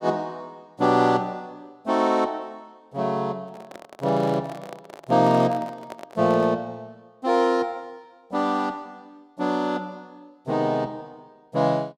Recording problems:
microphone handling noise; from 3.5 to 6.5 s; peak -8 dB vs average level

